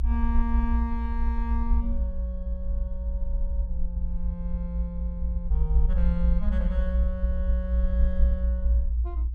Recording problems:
rumble; below 60 Hz, strongest tone 58 Hz, SNR -8 dB

